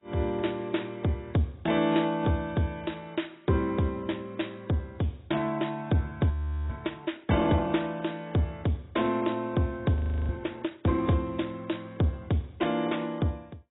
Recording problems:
codec artefacts; AAC, log-spectral distance 5 dB, nothing above 3.8 kHz
audio freezing; at 6.5 s and at 10 s

